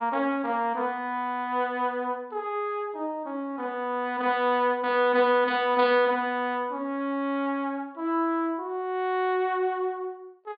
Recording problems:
low-pass filter; nothing above 4.7 kHz

